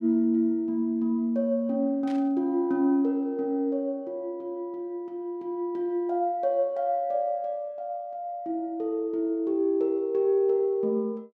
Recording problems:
burst of static; at 2 s; peak -15 dB vs average level

